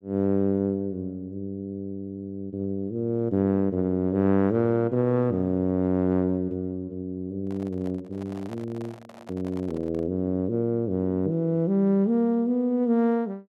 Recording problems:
microphone handling noise; from 7.5 to 10 s; peak -12 dB vs average level

